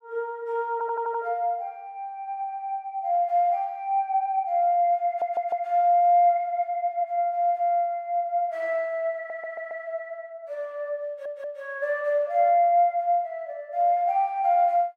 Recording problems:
stutter; 4 times, first at 0.5 s

